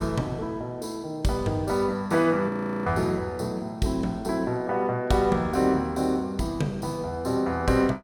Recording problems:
frozen audio; at 2.5 s

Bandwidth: 17 kHz